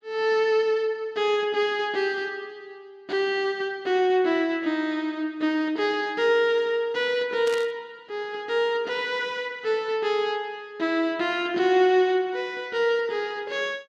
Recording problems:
burst of static; at 7.5 s; peak -8 dB vs average level

